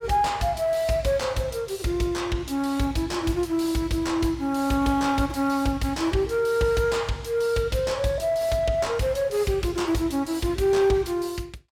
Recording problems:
distortion; soft clipping, signal-to-distortion ratio 12 dB

